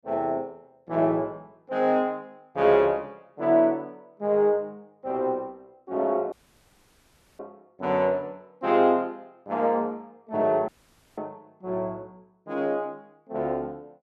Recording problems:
dropout; at 6.5 s for 1 s and at 11 s

